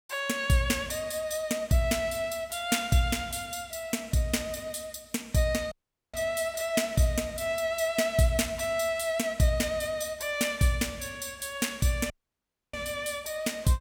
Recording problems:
dropout; at 5.5 s and at 12 s for 0.5 s

